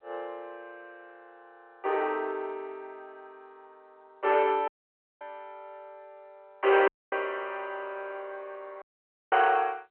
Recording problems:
telephone audio; 320 Hz to 3.2 kHz, G.711
distorted audio; hard clipping, signal-to-distortion ratio 11 dB
dropout; at 4.5 s for 0.5 s, at 7 s and at 9 s for 0.5 s

